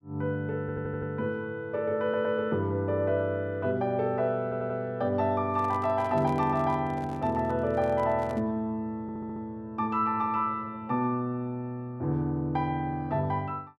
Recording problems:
audio stuttering; 4 times, first at 0.5 s
microphone handling noise; from 5.5 to 8.5 s; peak -7 dB vs average level

